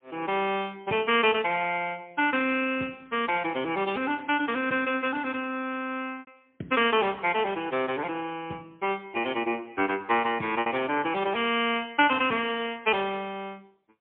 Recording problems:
telephone audio; 150 Hz to 3.4 kHz, AMR-NB, then MP3
packet loss; 1.1% of the sound replaced, filled with repeated pitch periods

